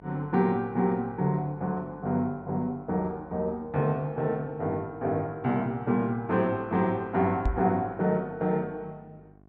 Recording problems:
hum; 50 Hz, harmonics up to 1.1 kHz, SNR 24 dB
microphone thump; at 7.5 s; peak +4 dB vs average level

